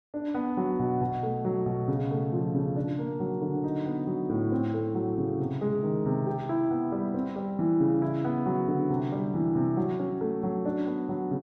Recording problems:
none

